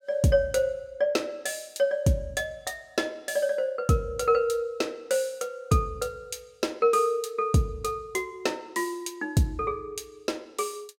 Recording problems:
none

